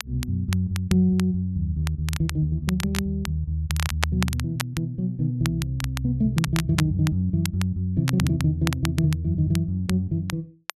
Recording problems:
crackle; vinyl, SNR 11 dB

